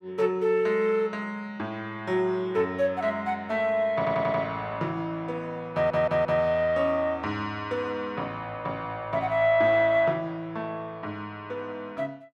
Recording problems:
stutter; at 4 s and at 5.5 s

